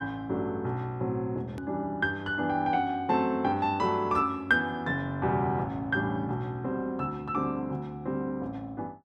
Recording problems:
hard cut with a click; at 1.5 s

